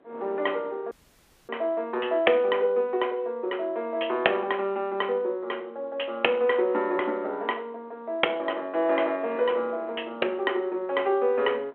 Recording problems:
phone line; 300 Hz to 3.2 kHz, G.726
wind on the microphone; below 760 Hz, SNR 24 dB
dropout; at 1 s for 0.5 s

